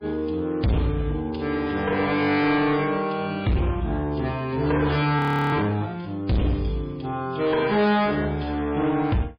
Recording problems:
codec artefacts; MP3, log-spectral distance 4 dB
distortion; hard clipping, uneven, signal-to-distortion ratio 6 dB
audio freezing; at 5 s

